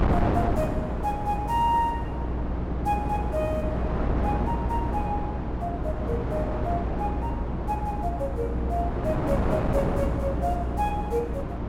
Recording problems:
hum; 60 Hz, harmonics up to 360 Hz, SNR 3 dB
wind on the microphone; below 570 Hz, SNR 0 dB

